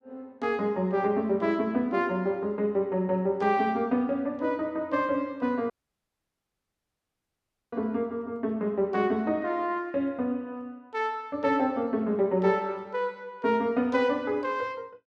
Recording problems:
audio cutting out; at 5.5 s for 2 s

